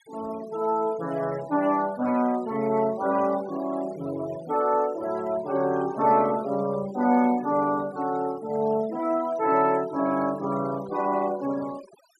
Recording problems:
noise reduction artefacts; signal-to-artefact ratio 21 dB

